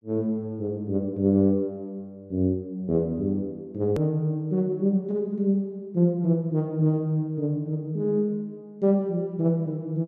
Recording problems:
hard cut with a click; at 4 s

